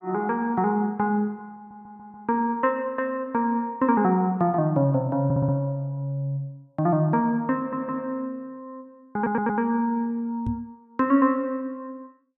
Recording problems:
stutter; 4 times, first at 1.5 s
microphone bump; at 10 s; peak -1 dB vs average level

